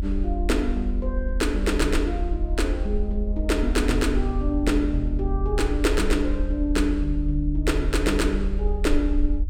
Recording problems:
low-frequency rumble; below 52 Hz, strongest tone 38 Hz, SNR 2 dB

